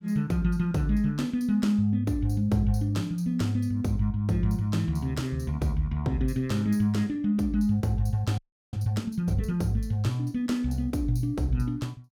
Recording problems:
frozen audio; at 8.5 s

